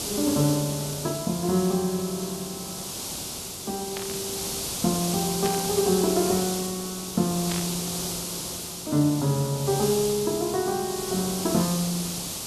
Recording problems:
hiss; SNR 4 dB
burst of static; at 4 s, at 5.5 s and at 7.5 s; peak -4 dB vs average level

